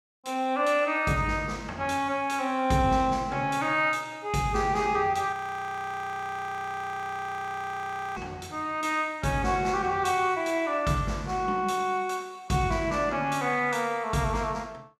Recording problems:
frozen audio; at 5.5 s for 3 s

